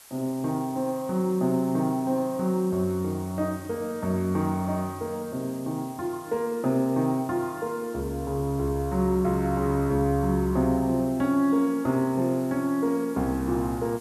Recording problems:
hiss; slope 0 dB per octave, SNR 21 dB

